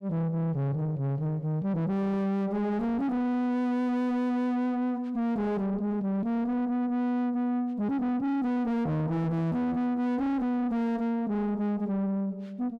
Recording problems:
distortion; soft clipping, signal-to-distortion ratio 5 dB

